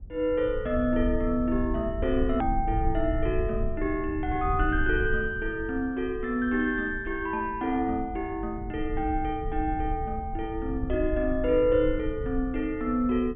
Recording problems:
treble cut off; nothing above 3.5 kHz
low-frequency rumble; below 76 Hz, SNR 8 dB
edit click; at 2.5 s

